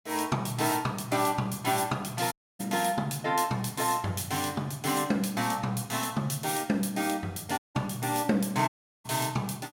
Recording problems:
audio cutting out; at 2.5 s, at 7.5 s and at 8.5 s

